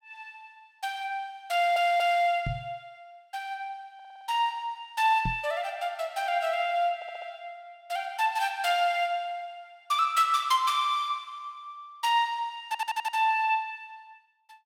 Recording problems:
audio stuttering; 4 times, first at 1.5 s
microphone bump; at 2.5 s and at 5.5 s; peak -1 dB vs average level

